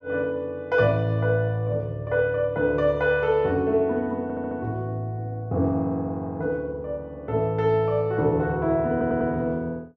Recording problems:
audio stuttering; at 4 s and at 9 s

